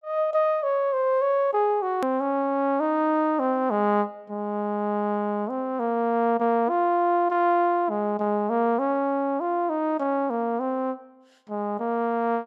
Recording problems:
hard cut with a click; at 2 s

